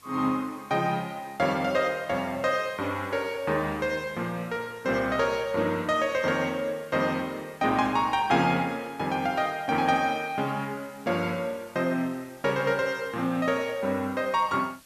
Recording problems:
hiss; slope 0 dB per octave, SNR 26 dB

